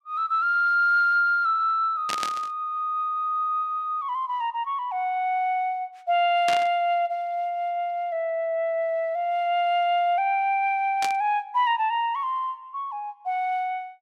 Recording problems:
static burst; at 2 s, at 6.5 s and at 11 s; peak -2 dB vs average level

